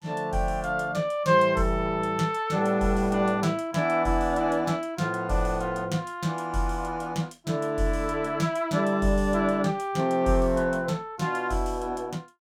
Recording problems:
none

